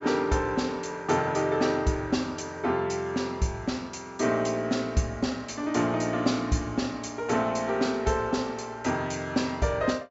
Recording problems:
treble cut off; nothing above 8 kHz

